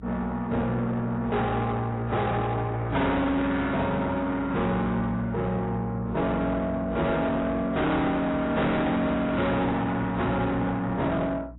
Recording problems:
lossy compression; AAC, log-spectral distance 2 dB, nothing above 3.8 kHz
distorted audio; soft clipping, signal-to-distortion ratio 6 dB
hum; 60 Hz, harmonics up to 300 Hz, SNR 17 dB

